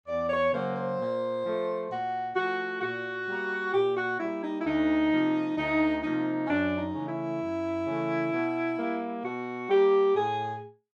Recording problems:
none

